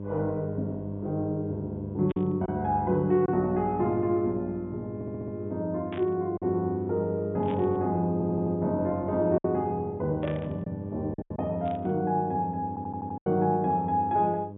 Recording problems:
treble missing; nothing above 3.6 kHz
electrical hum; 50 Hz, harmonics up to 600 Hz, SNR 9 dB
lost packets; 3% of the sound replaced, filled with silence
burst of static; 5 times, first at 2 s; peak -10 dB vs average level
audio stuttering; at 5 s, at 8 s and at 13 s

